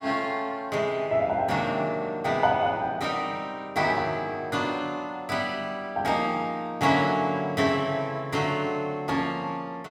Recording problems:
none

